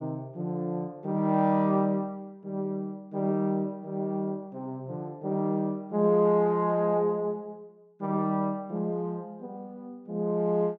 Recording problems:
none

